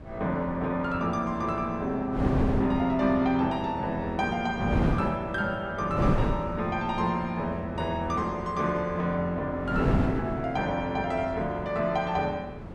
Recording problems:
wind noise; below 350 Hz, SNR 5 dB

